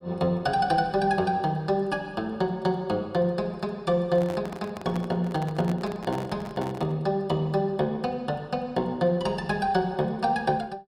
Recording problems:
microphone handling noise; from 4 to 7 s; peak -6 dB vs average level

